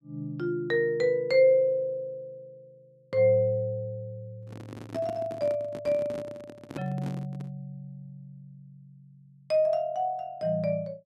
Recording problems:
microphone handling noise; from 4.5 to 7.5 s; peak -5 dB vs average level

